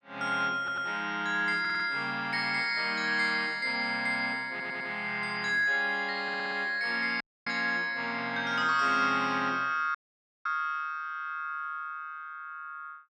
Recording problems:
stutter; 4 times, first at 0.5 s
audio cutting out; at 7 s and at 10 s for 0.5 s

